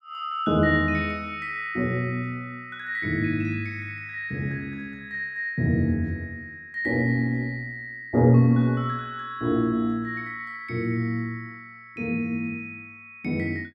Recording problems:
none

